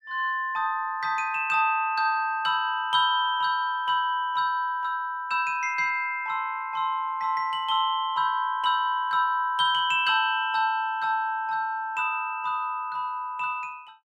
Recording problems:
none

